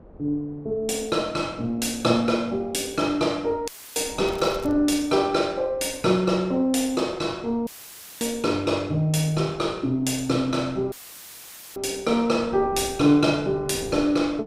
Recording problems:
wind on the microphone; below 490 Hz, SNR 21 dB
dropout; at 3.5 s, at 7.5 s for 0.5 s and at 11 s for 1 s; filled with static
crackling; at 4.5 s; loose cable, SNR 23 dB

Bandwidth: 15.5 kHz